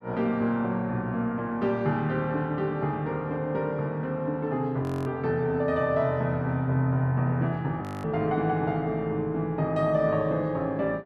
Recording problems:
audio freezing; at 5 s and at 8 s

